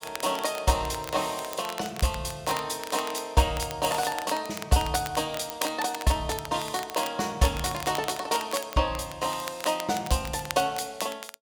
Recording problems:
crackling; vinyl, SNR 12 dB

